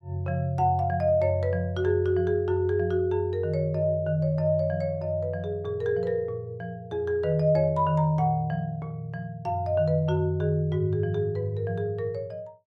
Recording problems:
none

